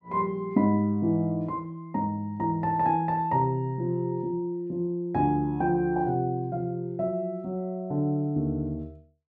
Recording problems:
none

